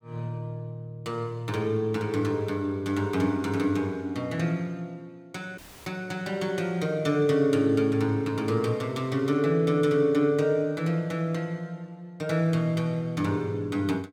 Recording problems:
dropout; at 5.5 s; filled with static

